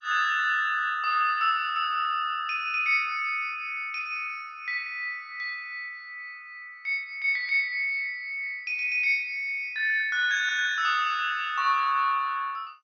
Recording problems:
codec artefacts; MP2, log-spectral distance 3 dB, nothing above 5.5 kHz

